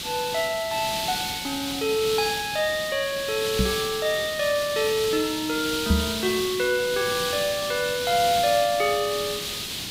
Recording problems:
background hiss; SNR 4 dB
microphone thump; at 3.5 s and at 6 s; peak +7 dB vs average level

